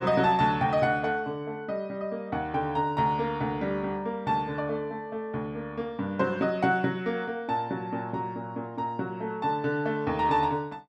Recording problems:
none

